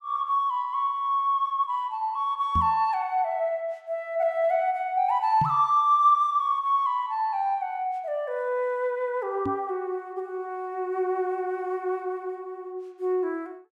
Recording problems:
microphone thump; at 2.5 s, at 5.5 s and at 9.5 s; peak 0 dB vs average level

